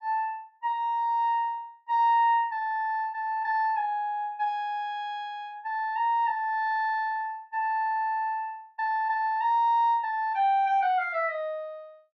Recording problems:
none

